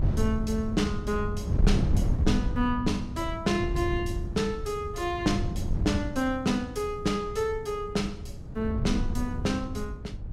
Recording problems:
wind on the microphone; below 130 Hz, SNR 3 dB

